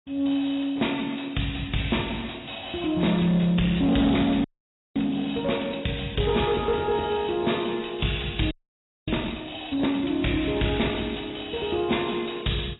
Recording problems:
lossy codec; AAC, log-spectral distance 12 dB, nothing above 3.9 kHz
distorted audio; soft clipping, signal-to-distortion ratio 10 dB
frozen audio; at 4.5 s for 0.5 s and at 8.5 s for 0.5 s

